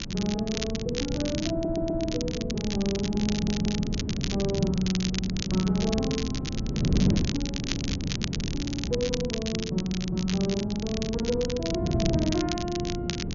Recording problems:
treble cut off; nothing above 6.9 kHz
wind on the microphone; below 240 Hz, SNR 2 dB
crackle; vinyl, SNR 6 dB
stutter; at 1.5 s, at 3.5 s and at 8.5 s

